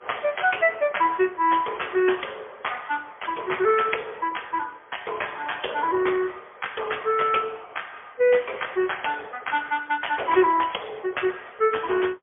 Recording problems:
telephone audio; 340 Hz to 3.3 kHz, AMR-NB, then MP3

